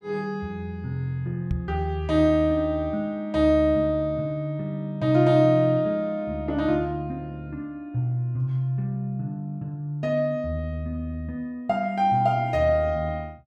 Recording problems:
knock on the microphone; at 1.5 s; peak -1 dB vs average level

